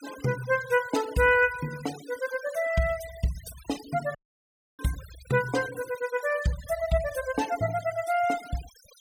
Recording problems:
noise reduction artefacts; signal-to-artefact ratio 16 dB
dropout; at 4 s for 0.5 s

